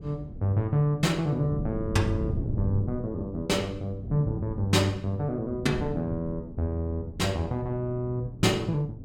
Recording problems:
wind on the microphone; below 190 Hz, SNR 9 dB

